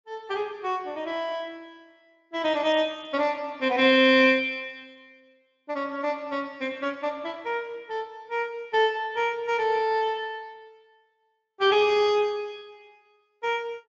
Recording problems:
lossy compression; MP3, then Speex, log-spectral distance 3 dB

